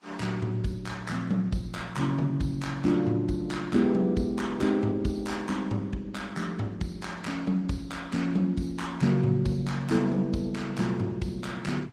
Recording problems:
lossy compression; Vorbis, then Opus, log-spectral distance 3 dB, nothing above 16.6 kHz

